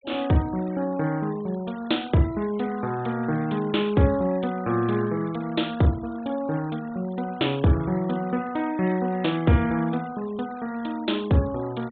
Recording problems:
low-pass filter; nothing above 4 kHz
noise reduction artefacts; signal-to-artefact ratio 21 dB

